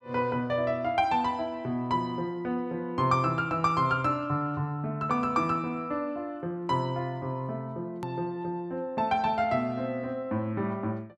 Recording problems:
edit click; at 8 s

